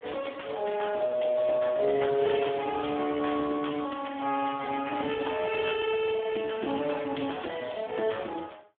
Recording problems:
telephone audio; 240 Hz to 3.4 kHz, Speex

